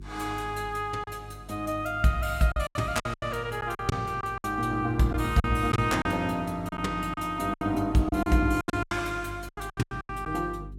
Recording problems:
hum; 50 Hz, harmonics up to 400 Hz, SNR 17 dB
packet loss; 12% of the sound replaced, filled with silence

